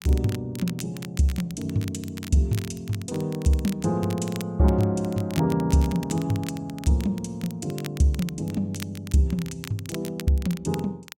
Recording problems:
crackle; vinyl, SNR 16 dB

